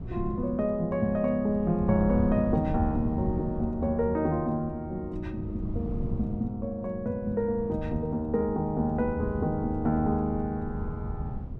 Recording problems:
wind on the microphone; below 150 Hz, SNR 9 dB

